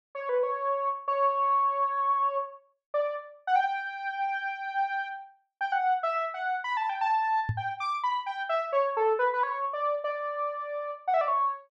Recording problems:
microphone thump; at 7.5 s; peak +2 dB vs average level

